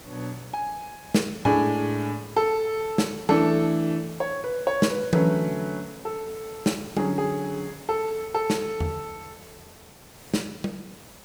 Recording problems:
background hiss; slope -4 dB per octave, SNR 19 dB

